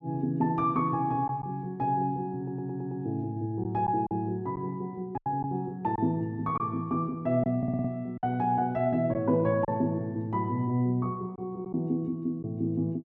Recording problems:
lost packets; 3% of the sound replaced, filled with silence
stutter; at 2.5 s and at 7.5 s

